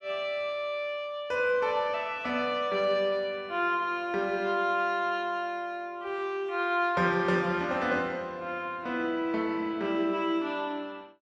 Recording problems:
none

